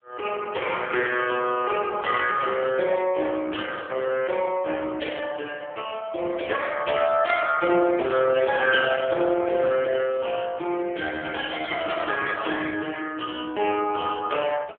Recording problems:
phone line; 300 Hz to 2.9 kHz, AMR-NB

